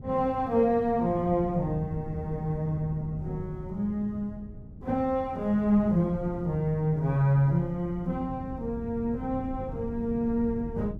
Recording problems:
wind on the microphone; below 190 Hz, SNR 12 dB

